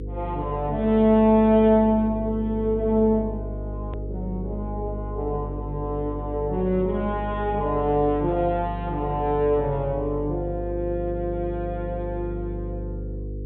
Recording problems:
treble cut off; nothing above 4 kHz
electrical hum; 50 Hz, harmonics up to 500 Hz, SNR 9 dB
click at an edit; at 4 s

